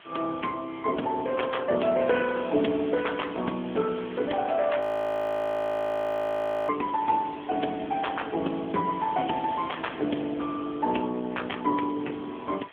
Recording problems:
phone line; 220 Hz to 3.3 kHz, AMR-NB
hiss; SNR 19 dB
frozen audio; at 5 s for 2 s

